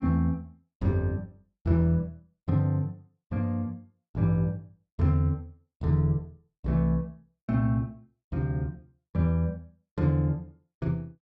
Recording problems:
none

